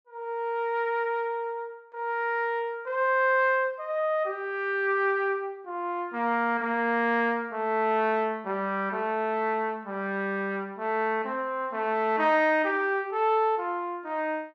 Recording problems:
none

